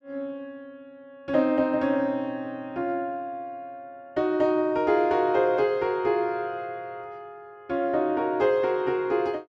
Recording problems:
none

